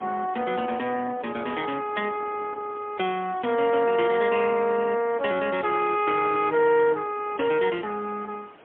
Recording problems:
telephone audio; 240 Hz to 3.3 kHz, AMR-NB, then MP3
hiss; SNR 25 dB
wind on the microphone; below 800 Hz, SNR 20 dB
crackling; from 3 to 4.5 s and from 5.5 to 7 s; loose cable, SNR 28 dB

